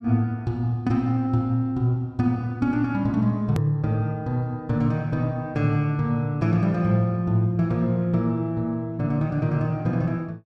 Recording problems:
edit click; at 3.5 s

